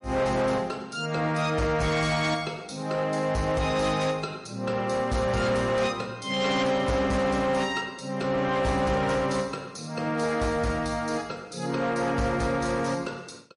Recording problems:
lossy compression; MP3, log-spectral distance 3 dB, nothing above 10.4 kHz
distorted audio; hard clipping, uneven, signal-to-distortion ratio 10 dB

